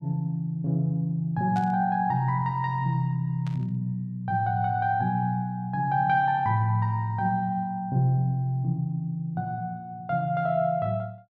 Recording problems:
static burst; at 1.5 s and at 3.5 s; peak -15 dB vs average level

